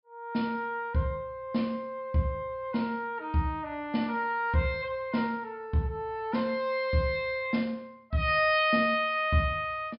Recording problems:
treble missing; nothing above 5.5 kHz

